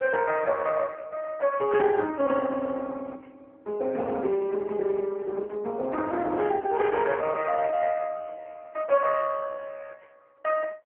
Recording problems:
phone line; 260 Hz to 3.2 kHz, AMR-NB

